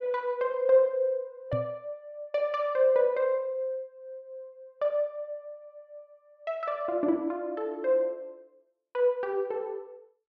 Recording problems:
knock on the microphone; at 1.5 s; peak -1 dB vs average level

